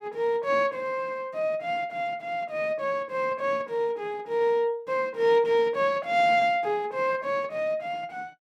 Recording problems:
none

